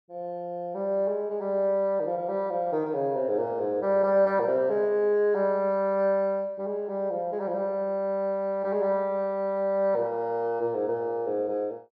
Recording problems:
none

